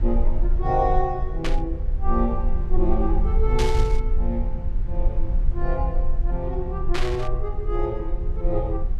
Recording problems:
rumble; below 44 Hz, strongest tone 20 Hz, SNR -1 dB
burst of static; at 1.5 s, at 3.5 s and at 7 s; peak +3 dB vs average level

